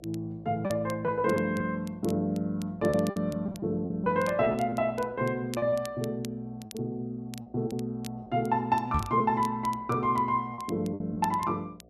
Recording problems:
mains hum; 60 Hz, harmonics up to 720 Hz, SNR 26 dB
crackling; vinyl, SNR 21 dB
lost packets; 7% of the sound replaced, filled with repeated pitch periods
microphone bump; at 9 s; peak +2 dB vs average level

